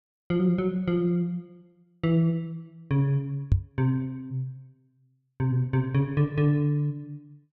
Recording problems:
knock on the microphone; at 3.5 s; peak +8 dB vs average level

